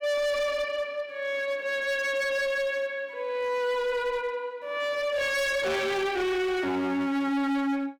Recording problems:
distorted audio; hard clipping, signal-to-distortion ratio 7 dB

